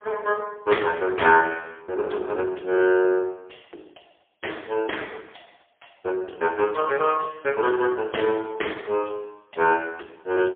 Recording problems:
phone line; 320 Hz to 3.1 kHz, AMR-NB, then MP3

